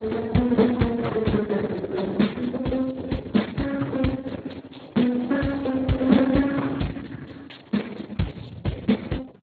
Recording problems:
lossy compression; Opus, then Speex, log-spectral distance 8 dB, nothing above 4.2 kHz

